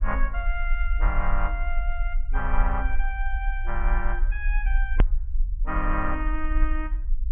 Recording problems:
low-pass filter; nothing above 3.3 kHz
rumble; below 42 Hz, SNR -4 dB
hard cut with a click; at 5 s

